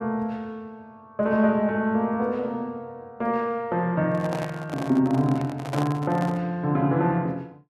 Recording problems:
handling noise; from 4 to 6.5 s; peak -2 dB vs average level

